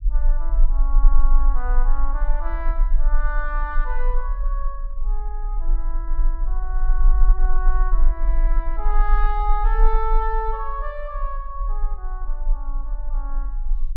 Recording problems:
low-frequency rumble; below 34 Hz, strongest tone 22 Hz, SNR -7 dB

